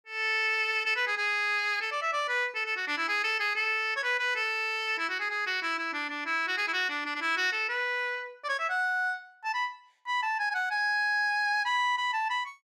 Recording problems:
none

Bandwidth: 14.5 kHz